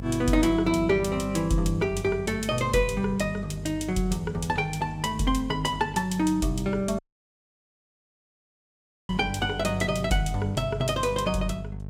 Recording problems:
electrical hum; 50 Hz, harmonics up to 650 Hz, SNR 12 dB
audio cutting out; at 7 s for 2 s

